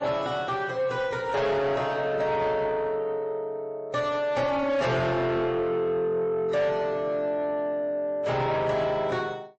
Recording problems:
lossy codec; AAC, then MP3, log-spectral distance 2 dB, nothing above 8 kHz
distortion; soft clipping, signal-to-distortion ratio 12 dB

